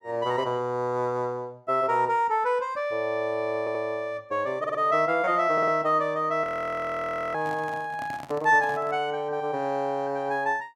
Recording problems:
audio stuttering; at 3.5 s, at 4.5 s and at 5.5 s
handling noise; from 6.5 to 9 s; peak -10 dB vs average level
audio freezing; at 6.5 s for 1 s

